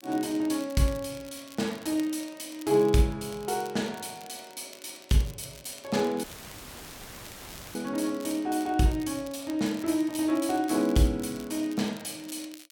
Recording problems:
crackling; vinyl, SNR 20 dB
dropout; at 6 s for 1.5 s; filled with static

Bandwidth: 17 kHz